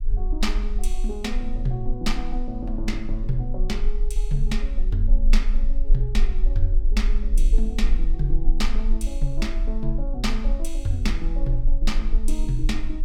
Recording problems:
rumble; below 36 Hz, strongest tone 24 Hz, SNR -4 dB

